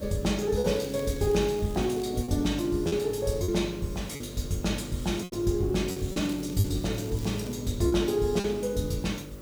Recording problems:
hum; 50 Hz, harmonics up to 600 Hz, SNR 15 dB
hiss; SNR 23 dB
packet loss; 5% of the sound replaced, filled with repeated pitch periods
crackling; from 0.5 to 2 s and from 6 to 7.5 s; loose cable, SNR 21 dB

